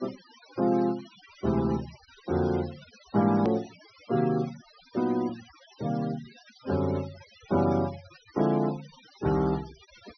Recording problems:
low-pass filter; nothing above 5.9 kHz
noise reduction artefacts; signal-to-artefact ratio 19 dB
edit click; at 3.5 s

